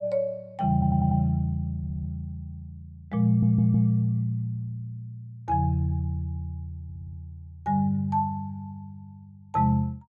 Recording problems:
audio stuttering; 4 times, first at 0.5 s

